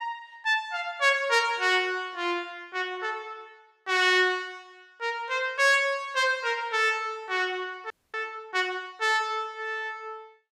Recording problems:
frozen audio; at 8 s

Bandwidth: 15.5 kHz